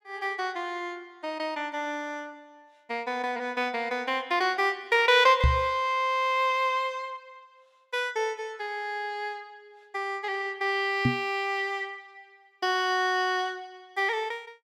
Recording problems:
knock on the microphone; at 5.5 s and at 11 s; peak +8 dB vs average level

